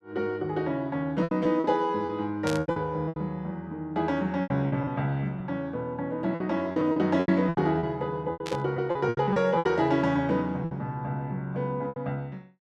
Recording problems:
lost packets; 11% of the sound replaced, filled with repeated pitch periods
static burst; at 2.5 s and at 8.5 s; peak -4 dB vs average level

